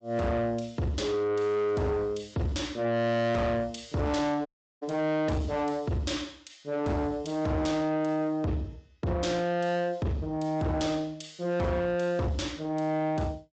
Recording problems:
treble missing; nothing above 7.8 kHz
codec artefacts; MP3, log-spectral distance 2 dB
distorted audio; soft clipping, signal-to-distortion ratio 8 dB
audio cutting out; at 4.5 s

